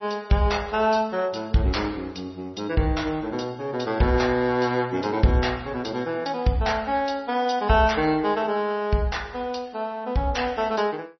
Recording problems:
lossy compression; MP3, log-spectral distance 4 dB, nothing above 5.8 kHz

